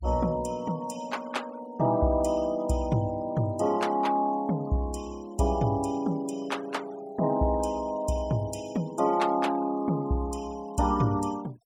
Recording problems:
denoising artefacts; signal-to-artefact ratio 21 dB

